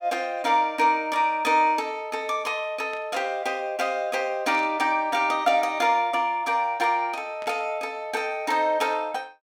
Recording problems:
static burst; at 3 s, at 4.5 s and at 7.5 s; peak -15 dB vs average level

